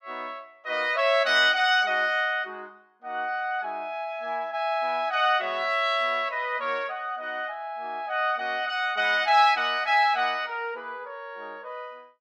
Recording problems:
none

